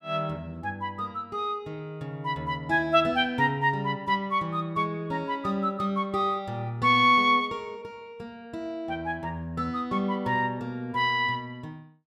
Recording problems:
none

